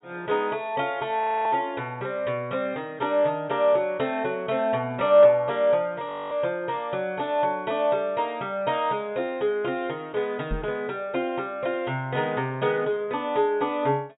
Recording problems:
treble missing; nothing above 4 kHz
frozen audio; at 1 s and at 6 s
knock on the microphone; at 11 s; peak -2 dB vs average level

